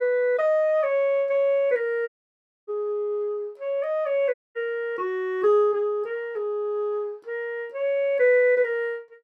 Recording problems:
audio cutting out; at 2 s for 0.5 s and at 4.5 s

